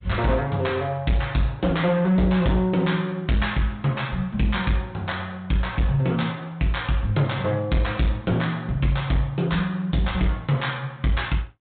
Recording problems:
treble cut off; nothing above 3.9 kHz
lossy codec; MP3, log-spectral distance 2 dB
distortion; hard clipping, signal-to-distortion ratio 12 dB

